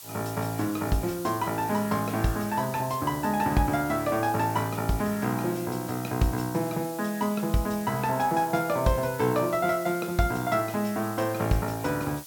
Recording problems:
background hiss; SNR 14 dB

